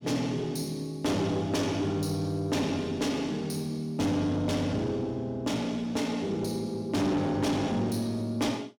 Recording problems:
distorted audio; soft clipping, signal-to-distortion ratio 10 dB

